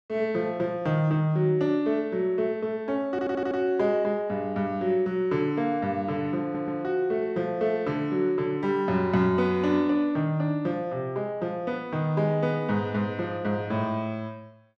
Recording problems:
audio stuttering; at 3 s and at 6.5 s

